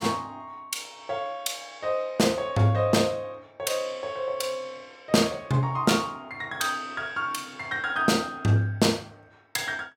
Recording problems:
none

